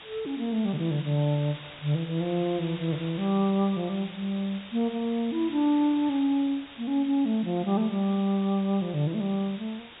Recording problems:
low-pass filter; nothing above 4 kHz
background hiss; SNR 16 dB

